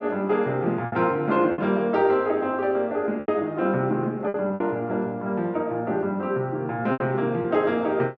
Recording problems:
lost packets; 6% of the sound replaced, filled with repeated pitch periods

